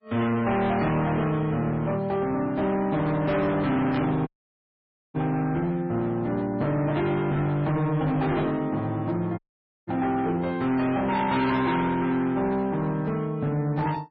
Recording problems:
codec artefacts; MP3, log-spectral distance 2 dB, nothing above 4.5 kHz
distortion; hard clipping, signal-to-distortion ratio 8 dB
static burst; at 4 s and at 8.5 s; peak -7 dB vs average level
dropout; at 4.5 s for 1 s and at 9.5 s

